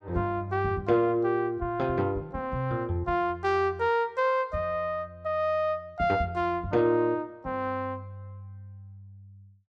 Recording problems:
none

